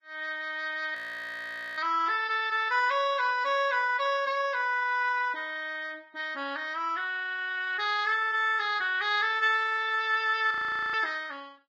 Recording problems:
codec artefacts; Vorbis, log-spectral distance 2 dB, nothing above 15.1 kHz
audio freezing; at 1 s for 1 s and at 11 s

